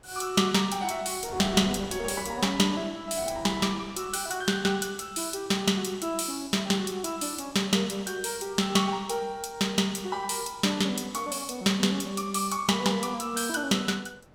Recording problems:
wind on the microphone; below 770 Hz, SNR 22 dB

